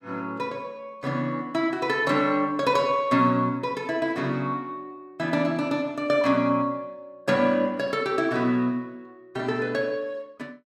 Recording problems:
none

